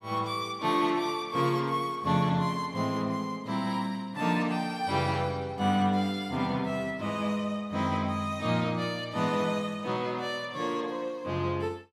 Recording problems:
none

